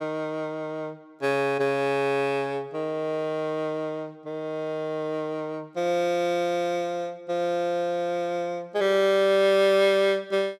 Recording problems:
none

